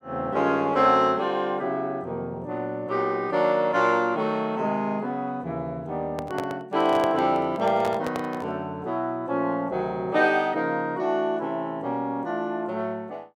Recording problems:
microphone handling noise; from 6 to 8.5 s; peak -1 dB vs average level

